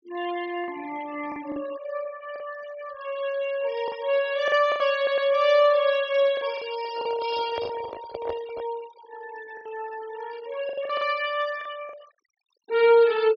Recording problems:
low-pass filter; nothing above 6.4 kHz
denoising artefacts; signal-to-artefact ratio 19 dB
lost packets; 7% of the sound replaced, filled with the last packet
stutter; at 5 s
microphone handling noise; from 7 to 8.5 s; peak -4 dB vs average level

